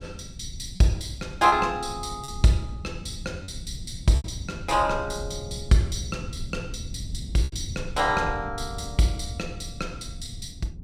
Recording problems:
low-frequency rumble; below 130 Hz, SNR 12 dB
lost packets; 3% of the sound replaced, filled with repeated pitch periods

